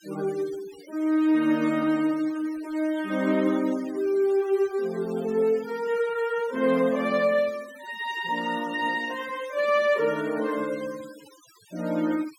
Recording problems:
denoising artefacts; signal-to-artefact ratio 21 dB

